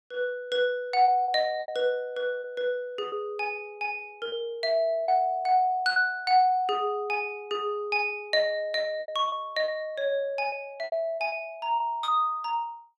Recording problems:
lost packets; 6% of the sound replaced, filled with repeated pitch periods

